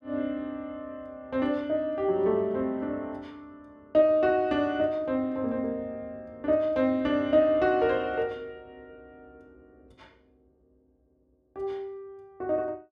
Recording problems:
none

